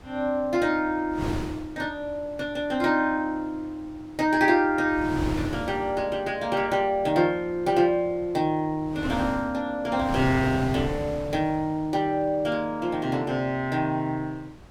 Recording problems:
wind on the microphone; below 540 Hz, SNR 12 dB

